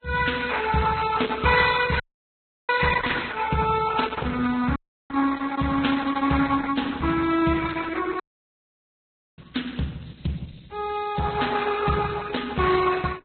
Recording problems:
codec artefacts; Opus, then Vorbis, log-spectral distance 6 dB, nothing above 4.1 kHz
audio cutting out; at 2 s for 0.5 s, at 5 s and at 8 s for 1 s

